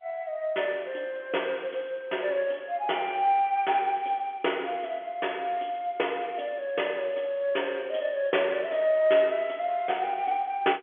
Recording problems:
telephone audio; 300 Hz to 3.4 kHz, G.711

